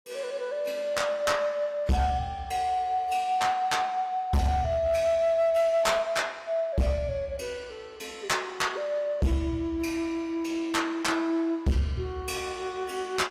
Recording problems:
lossy compression; AAC, log-spectral distance 2 dB, nothing above 15.1 kHz
distortion; hard clipping, uneven, signal-to-distortion ratio 6 dB

